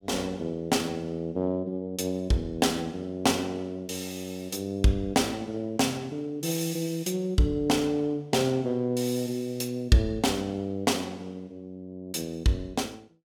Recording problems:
none

